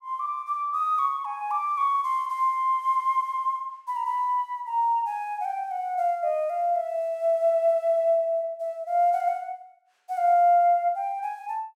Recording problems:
none

